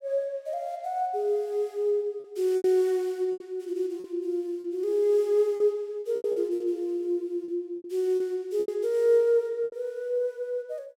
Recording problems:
packet loss; 8% of the sound replaced, filled with repeated pitch periods

